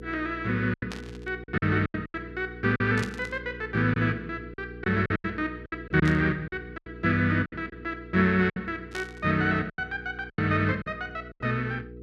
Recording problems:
electrical hum; 60 Hz, harmonics up to 480 Hz, SNR 15 dB
lost packets; 10% of the sound replaced, filled with silence
burst of static; 4 times, first at 1 s; peak -5 dB vs average level

